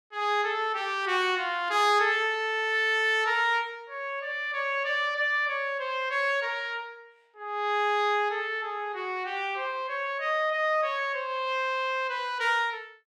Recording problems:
none

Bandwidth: 15 kHz